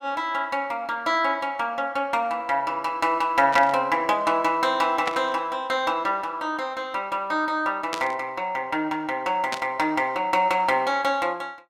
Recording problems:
burst of static; 4 times, first at 3.5 s; peak 0 dB vs average level

